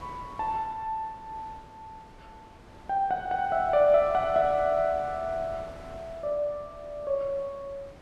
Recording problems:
wind noise; below 900 Hz, SNR 20 dB

